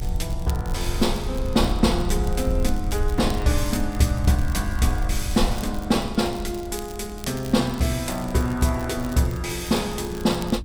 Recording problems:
hum; 60 Hz, harmonics up to 300 Hz, SNR 20 dB
low-frequency rumble; below 70 Hz, SNR 7 dB
crackling; vinyl, SNR 20 dB

